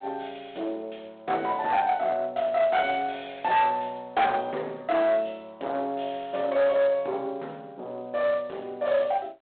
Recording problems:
phone line; 840 Hz to 3.6 kHz, G.726
distortion; soft clipping, signal-to-distortion ratio 11 dB

